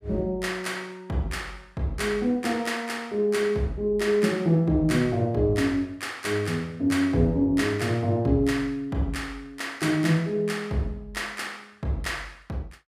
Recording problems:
none

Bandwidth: 15 kHz